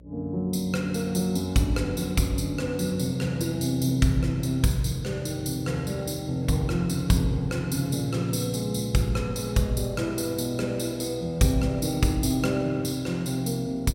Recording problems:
electrical hum; 60 Hz, harmonics up to 600 Hz, SNR 24 dB

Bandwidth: 16 kHz